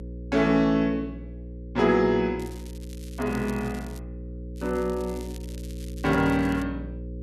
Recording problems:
hum; 60 Hz, harmonics up to 540 Hz, SNR 12 dB
crackling; from 2.5 to 4 s and from 4.5 to 6.5 s; loose cable, SNR 23 dB

